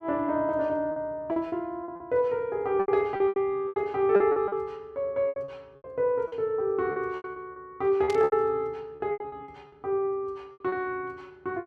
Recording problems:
packet loss; 13% of the sound replaced, filled with repeated pitch periods
burst of static; at 8 s; peak -7 dB vs average level

